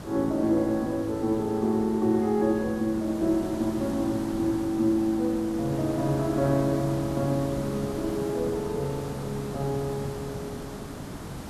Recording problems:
background hiss; slope -6 dB per octave, SNR 11 dB

